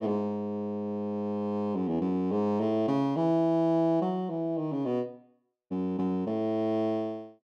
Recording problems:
none

